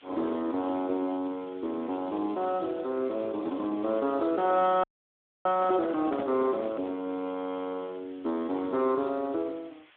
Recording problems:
telephone audio; 220 Hz to 3.7 kHz, Speex
hiss; SNR 27 dB
crackling; from 1 to 7 s; loose cable, SNR 30 dB
audio freezing; at 5 s for 0.5 s
microphone handling noise; from 5.5 to 7 s; peak -3 dB vs average level

